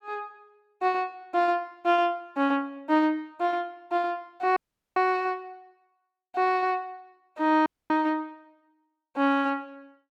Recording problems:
dropout; at 4.5 s and at 7.5 s

